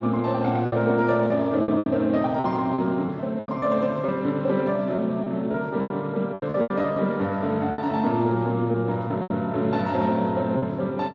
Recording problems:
lossy compression; Speex, log-spectral distance 2 dB
packet loss; 9% of the sound replaced, filled with repeated pitch periods

